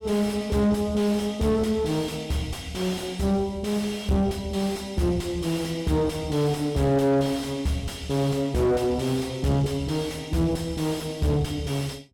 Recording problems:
distorted audio; soft clipping, signal-to-distortion ratio 4 dB

